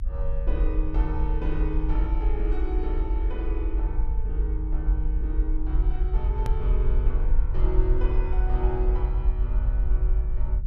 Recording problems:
rumble; below 52 Hz, SNR -8 dB
click at an edit; at 6.5 s

